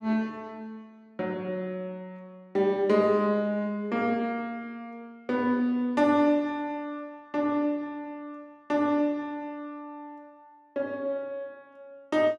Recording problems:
none

